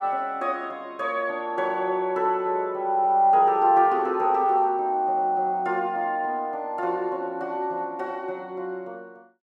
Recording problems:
none

